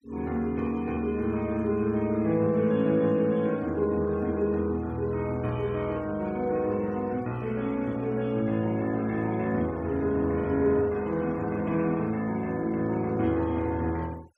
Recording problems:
denoising artefacts; signal-to-artefact ratio 26 dB

